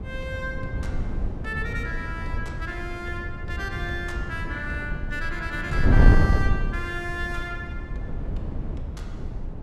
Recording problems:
wind on the microphone; below 120 Hz, SNR -4 dB

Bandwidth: 14.5 kHz